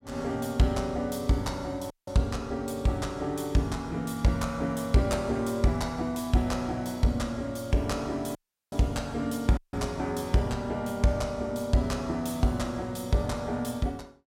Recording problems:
dropout; at 2 s, at 8.5 s and at 9.5 s

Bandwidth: 16.5 kHz